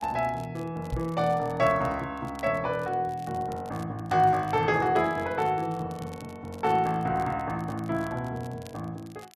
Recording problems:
crackling; vinyl, SNR 26 dB
microphone thump; at 1 s; peak 0 dB vs average level

